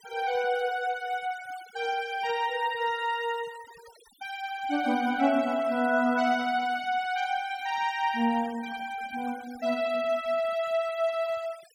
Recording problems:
denoising artefacts; signal-to-artefact ratio 20 dB

